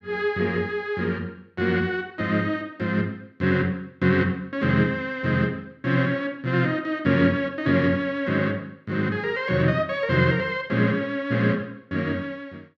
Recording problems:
none

